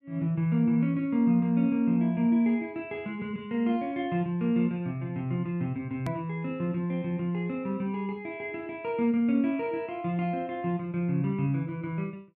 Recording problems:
click at an edit; at 6 s

